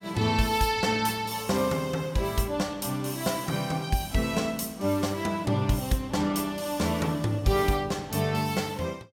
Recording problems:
none

